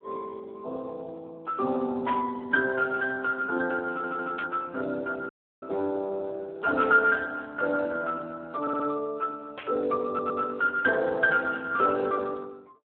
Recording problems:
phone line; 260 Hz to 2.8 kHz, Speex
burst of static; 4 times, first at 2 s; peak -3 dB vs average level
stutter; at 4 s, at 8.5 s and at 10 s
audio cutting out; at 5.5 s

